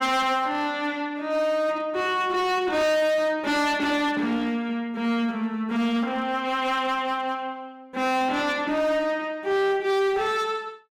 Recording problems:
distorted audio; hard clipping, signal-to-distortion ratio 8 dB

